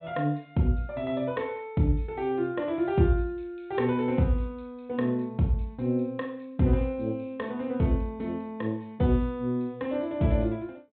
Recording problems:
low-pass filter; nothing above 4 kHz

